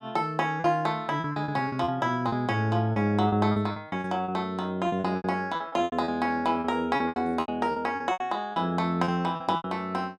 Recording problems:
lost packets; 15% of the sound replaced, filled with repeated pitch periods

